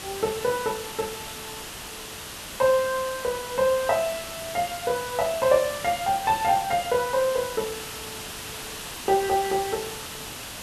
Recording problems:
background hiss; slope -1 dB per octave, SNR 9 dB

